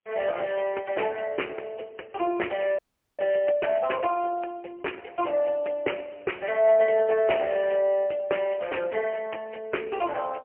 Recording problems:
phone line; 300 Hz to 3 kHz, AMR-NB, then MP3
audio freezing; at 3 s

